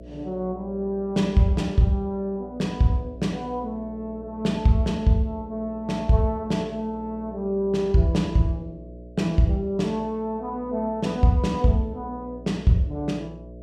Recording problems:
hum; 60 Hz, harmonics up to 660 Hz, SNR 18 dB

